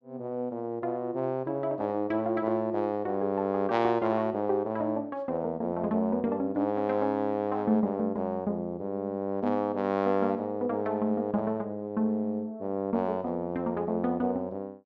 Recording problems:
none

